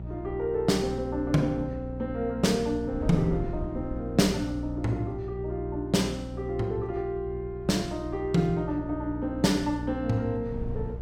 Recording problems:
hum; 60 Hz, harmonics up to 600 Hz, SNR 10 dB
wind noise; below 150 Hz, SNR 15 dB

